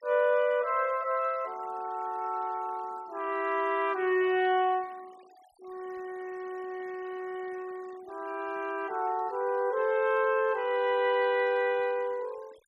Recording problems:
denoising artefacts; signal-to-artefact ratio 25 dB

